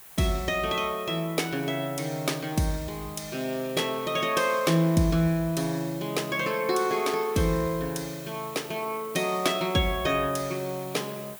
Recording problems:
hiss; slope -2 dB per octave, SNR 17 dB

